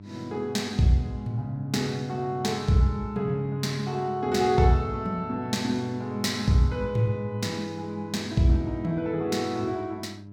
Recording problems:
electrical hum; 50 Hz, harmonics up to 700 Hz, SNR 16 dB

